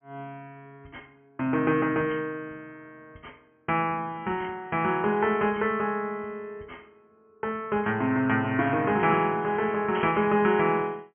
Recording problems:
treble cut off; nothing above 3.2 kHz
burst of static; at 10 s; peak -7 dB vs average level

